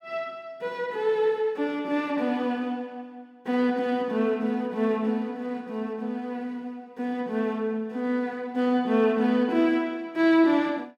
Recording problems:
none

